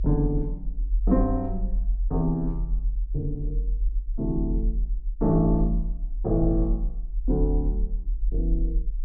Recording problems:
low-frequency rumble; below 44 Hz, strongest tone 42 Hz, SNR 2 dB

